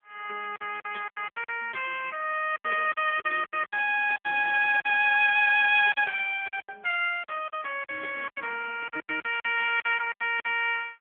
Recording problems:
telephone audio; 390 Hz to 3.3 kHz, AMR-NB
packet loss; 13% of the sound replaced, filled with silence

